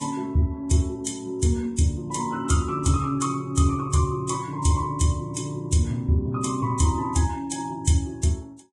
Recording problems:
codec artefacts; Vorbis, log-spectral distance 3 dB, nothing above 10.1 kHz

